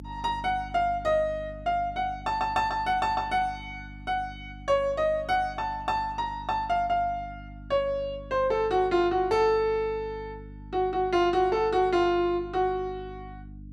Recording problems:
hum; 50 Hz, harmonics up to 300 Hz, SNR 17 dB

